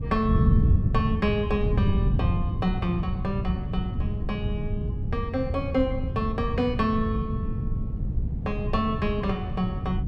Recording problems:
low-frequency rumble; below 110 Hz, SNR 13 dB
wind on the microphone; below 140 Hz, SNR -1 dB

